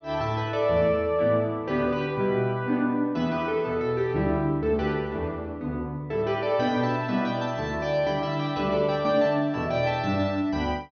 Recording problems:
low-pass filter; nothing above 6.2 kHz

